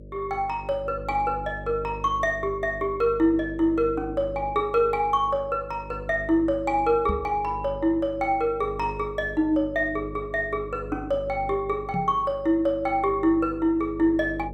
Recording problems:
electrical hum; 50 Hz, harmonics up to 600 Hz, SNR 16 dB
microphone bump; at 7 s and at 12 s; peak -1 dB vs average level

